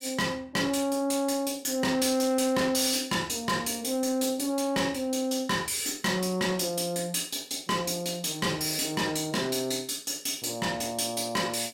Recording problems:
distortion; soft clipping, signal-to-distortion ratio 10 dB

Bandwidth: 16 kHz